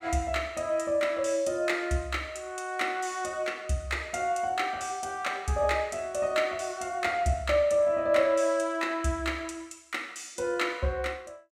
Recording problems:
none

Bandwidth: 16 kHz